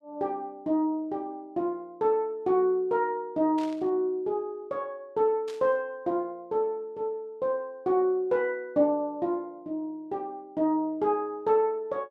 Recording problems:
static burst; at 3.5 s and at 5.5 s; peak -13 dB vs average level

